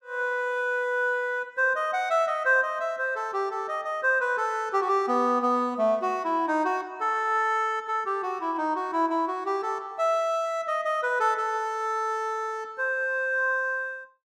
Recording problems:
none

